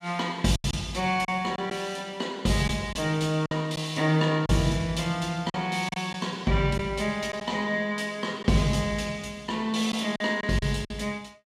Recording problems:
packet loss; 5% of the sound replaced, filled with silence

